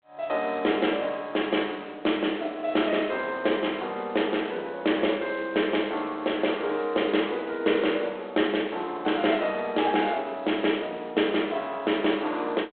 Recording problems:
phone line; 240 Hz to 3.6 kHz, G.726

